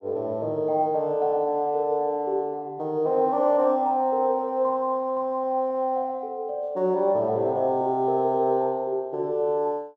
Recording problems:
none

